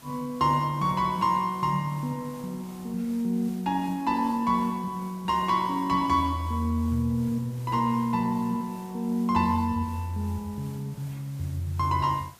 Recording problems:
background hiss; slope -3 dB per octave, SNR 23 dB

